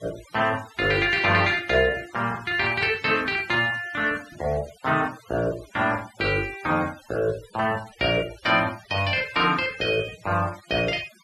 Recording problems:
noise reduction artefacts; signal-to-artefact ratio 20 dB

